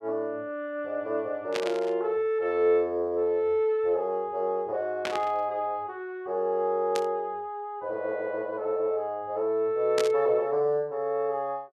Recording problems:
burst of static; 4 times, first at 1.5 s; peak 0 dB vs average level

